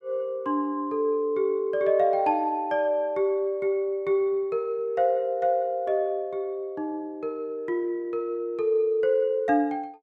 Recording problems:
none

